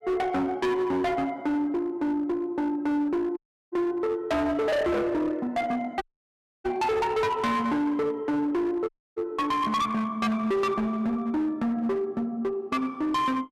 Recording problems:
distorted audio; hard clipping, uneven, signal-to-distortion ratio 7 dB
audio cutting out; at 3.5 s, at 6 s for 0.5 s and at 9 s

